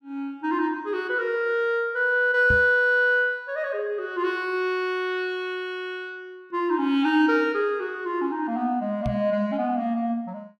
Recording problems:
microphone thump; at 2.5 s and at 9 s; peak -1 dB vs average level

